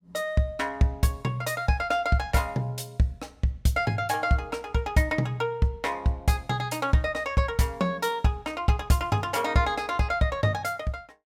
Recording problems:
none

